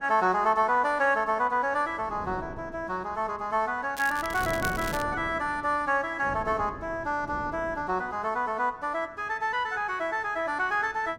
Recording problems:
wind noise; below 470 Hz, SNR 15 dB
crackling; from 4 to 5 s; loose cable, SNR 13 dB

